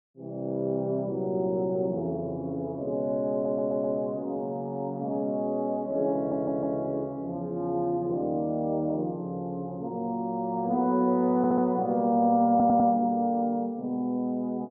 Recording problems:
audio stuttering; 4 times, first at 3.5 s

